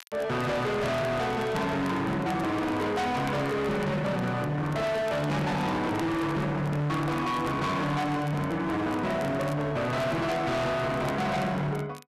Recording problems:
distorted audio; hard clipping, signal-to-distortion ratio 6 dB
crackle; vinyl, SNR 24 dB

